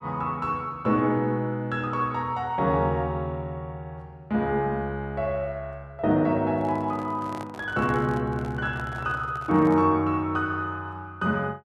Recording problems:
microphone handling noise; from 6.5 to 10 s; peak -9 dB vs average level

